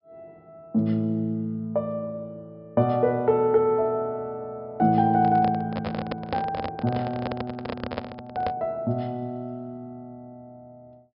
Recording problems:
treble cut off; nothing above 5.5 kHz
handling noise; from 5 to 8.5 s; peak 0 dB vs average level

